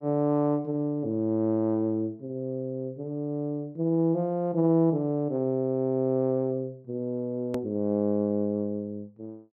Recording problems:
hard cut with a click; at 7.5 s

